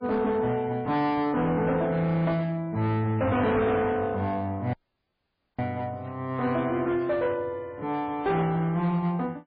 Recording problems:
codec artefacts; MP3, log-spectral distance 2 dB
distortion; hard clipping, uneven, signal-to-distortion ratio 10 dB
dropout; at 4.5 s for 1 s

